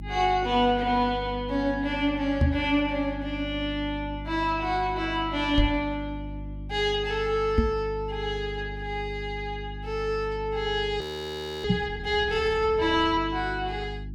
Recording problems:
hum; 50 Hz, harmonics up to 350 Hz, SNR 11 dB
knock on the microphone; 4 times, first at 2.5 s; peak +8 dB vs average level
audio freezing; at 11 s for 0.5 s

